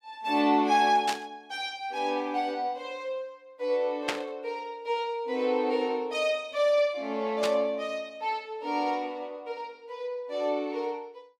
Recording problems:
static burst; at 1 s, at 4 s and at 7.5 s; peak +4 dB vs average level

